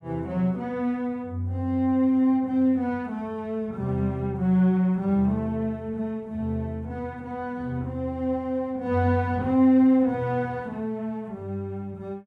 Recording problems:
none

